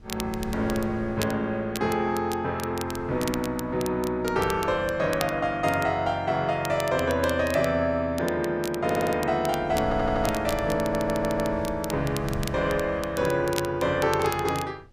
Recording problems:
wind noise; below 160 Hz, SNR 15 dB
crackling; vinyl, SNR 14 dB
stutter; at 9 s, at 10 s and at 11 s

